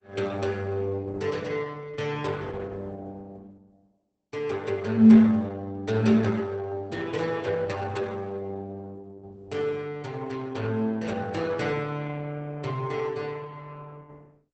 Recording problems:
lossy compression; Opus, log-spectral distance 3 dB, nothing above 8.2 kHz

